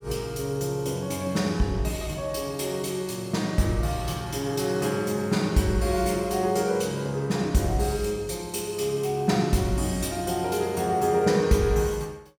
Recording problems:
none

